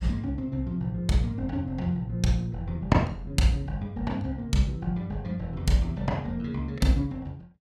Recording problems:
none

